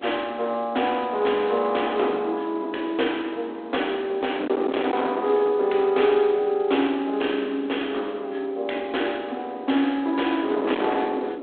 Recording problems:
telephone audio; 240 Hz to 3.5 kHz, G.726
distortion; hard clipping, uneven, signal-to-distortion ratio 10 dB
wind noise; below 720 Hz, SNR 11 dB

